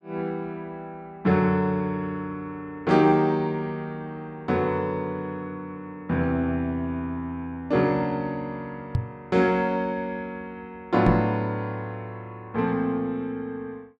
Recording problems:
microphone thump; at 9 s and at 11 s; peak +7 dB vs average level

